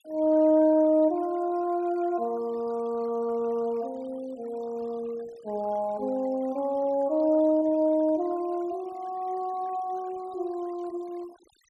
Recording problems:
noise reduction artefacts; signal-to-artefact ratio 26 dB

